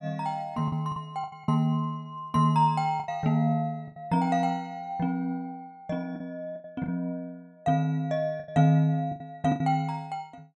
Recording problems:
packet loss; 7% of the sound replaced, filled with the last packet

